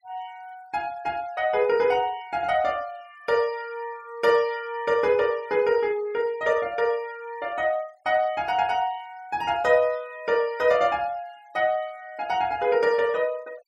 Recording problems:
denoising artefacts; signal-to-artefact ratio 26 dB

